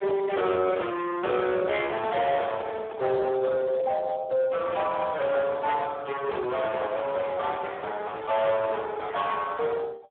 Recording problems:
phone line; 340 Hz to 2 kHz, Speex
distortion; hard clipping, signal-to-distortion ratio 7 dB
microphone handling noise; from 2 to 4 s; peak -6 dB vs average level

